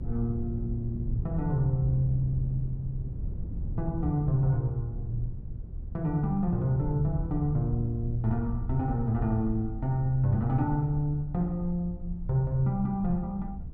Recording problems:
rumble; below 76 Hz, SNR 13 dB
wind noise; below 130 Hz, SNR 10 dB

